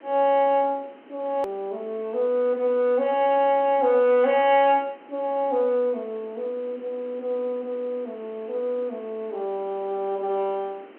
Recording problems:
telephone audio; 220 Hz to 3.3 kHz, G.711
hiss; SNR 24 dB
edit click; at 1.5 s

